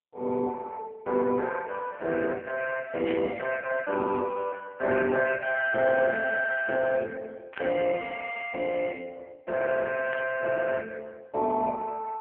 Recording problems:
telephone audio; 300 Hz to 2 kHz, AMR-NB
static burst; at 3 s, at 7.5 s and at 10 s; peak -9 dB vs average level

